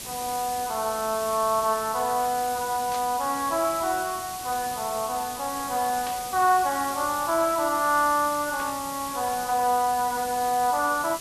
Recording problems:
hiss; SNR 10 dB
burst of static; at 3 s, at 6 s and at 8.5 s; peak -8 dB vs average level

